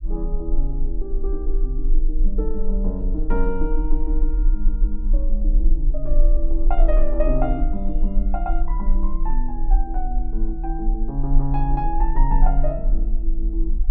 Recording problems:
low-frequency rumble; below 36 Hz, strongest tone 22 Hz, SNR -5 dB

